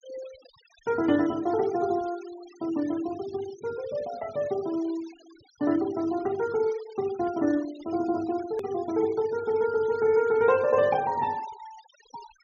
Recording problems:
treble missing; nothing above 6.8 kHz
noise reduction artefacts; signal-to-artefact ratio 22 dB
edit click; at 8.5 s

